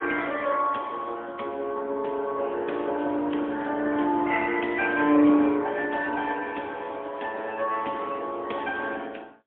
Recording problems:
telephone audio; 240 Hz to 3.4 kHz, AMR-NB, then MP3
crackle; from 3 to 5.5 s and from 6.5 to 7.5 s; loose cable, SNR 26 dB

